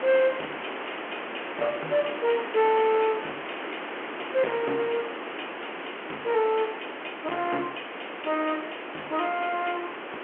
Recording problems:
phone line; 280 Hz to 3.2 kHz, G.711
distorted audio; soft clipping, signal-to-distortion ratio 8 dB
background hiss; SNR 8 dB

